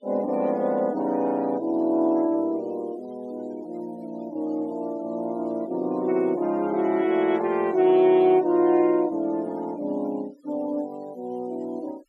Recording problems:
noise reduction artefacts; signal-to-artefact ratio 27 dB

